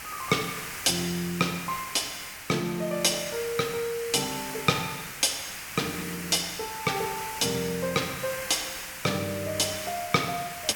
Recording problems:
hiss; SNR 8 dB

